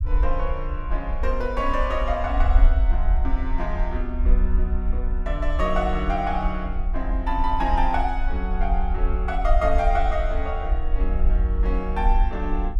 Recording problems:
rumble; below 52 Hz, SNR -2 dB

